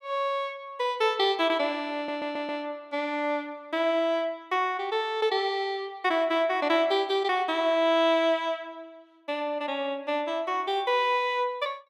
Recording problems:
stutter; at 2 s

